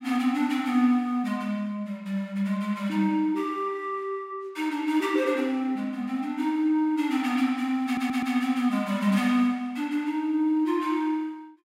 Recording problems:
stutter; at 8 s

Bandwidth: 16 kHz